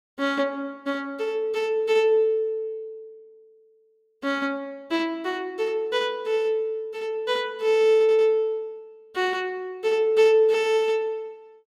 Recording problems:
audio stuttering; at 8 s

